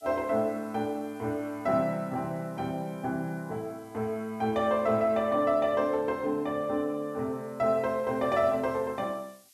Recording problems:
hiss; SNR 29 dB

